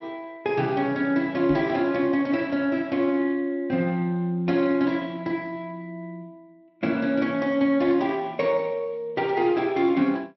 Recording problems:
treble missing; nothing above 5.7 kHz
codec artefacts; Speex, log-spectral distance 2 dB
microphone bump; at 1.5 s; peak +2 dB vs average level

